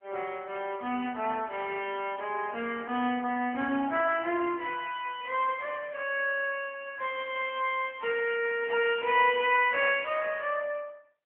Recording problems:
phone line; 220 Hz to 3.2 kHz, AMR-NB

